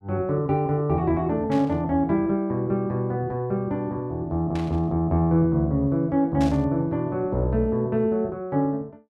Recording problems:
static burst; at 1.5 s, at 4.5 s and at 6.5 s; peak -10 dB vs average level

